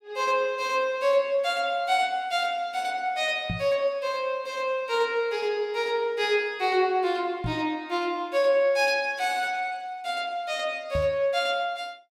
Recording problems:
knock on the microphone; at 3.5 s, at 7.5 s and at 11 s; peak -1 dB vs average level

